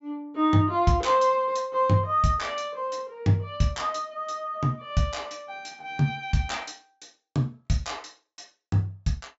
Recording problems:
low-pass filter; nothing above 8 kHz

